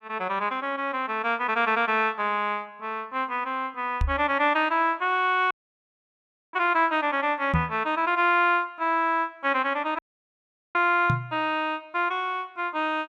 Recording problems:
knock on the microphone; at 4 s, at 7.5 s and at 11 s; peak +4 dB vs average level
audio cutting out; at 5.5 s for 1 s and at 10 s for 1 s

